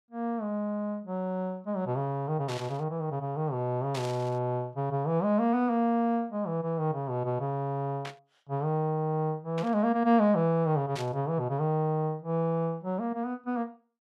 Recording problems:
burst of static; 5 times, first at 2.5 s; peak -6 dB vs average level

